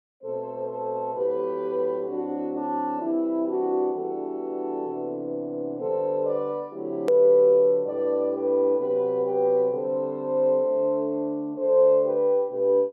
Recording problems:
edit click; at 7 s

